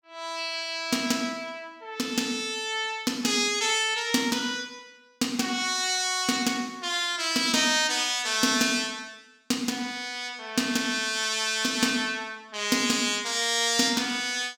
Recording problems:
none

